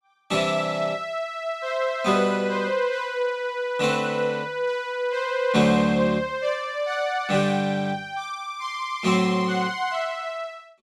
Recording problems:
none

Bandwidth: 15.5 kHz